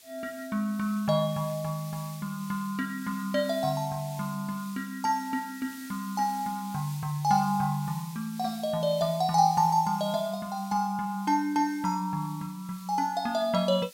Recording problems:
background hiss; SNR 18 dB

